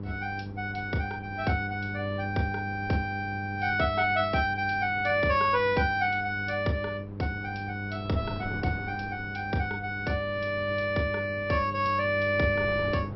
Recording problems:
treble missing; nothing above 5.6 kHz
hum; 50 Hz, harmonics up to 600 Hz, SNR 9 dB
wind noise; below 400 Hz, SNR 17 dB

